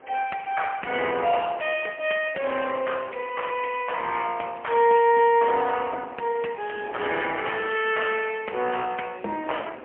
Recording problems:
phone line; 320 Hz to 3.2 kHz, AMR-NB, then MP3
wind noise; below 1.2 kHz, SNR 21 dB

